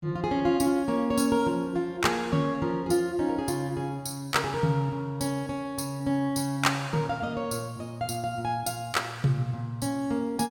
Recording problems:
none

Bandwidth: 17 kHz